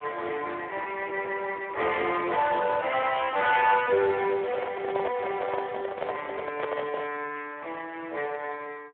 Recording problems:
telephone audio; 320 Hz to 3.4 kHz, Speex
microphone handling noise; from 4.5 to 7 s; peak 0 dB vs average level

